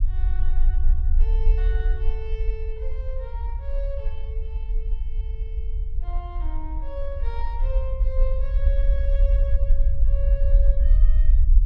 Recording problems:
rumble; below 50 Hz, SNR -14 dB

